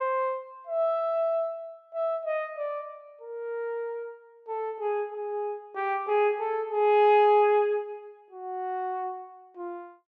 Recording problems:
none

